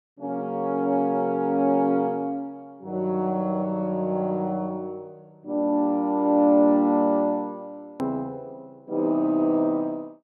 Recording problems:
hard cut with a click; at 8 s

